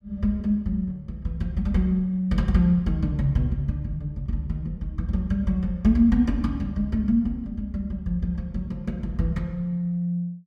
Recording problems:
none

